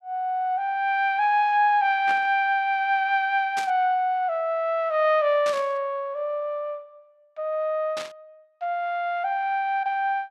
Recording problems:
static burst; 4 times, first at 2 s; peak -6 dB vs average level

